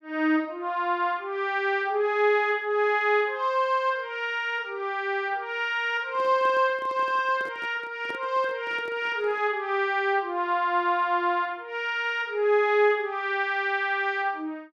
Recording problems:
handling noise; from 6 to 9.5 s; peak -11 dB vs average level

